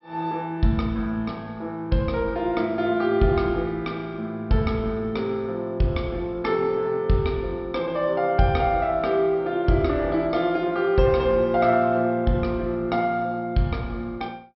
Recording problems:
treble missing; nothing above 5.5 kHz

